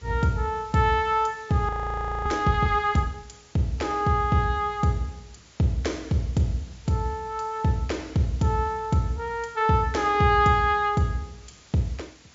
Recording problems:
low-pass filter; nothing above 7.4 kHz
background hiss; slope -1 dB per octave, SNR 27 dB
audio freezing; at 1.5 s for 0.5 s

